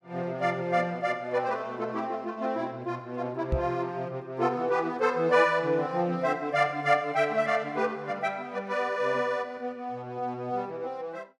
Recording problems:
knock on the microphone; at 3.5 s; peak +4 dB vs average level

